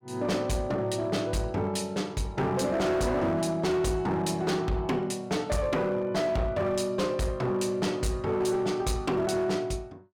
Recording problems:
distortion; hard clipping, uneven, signal-to-distortion ratio 10 dB

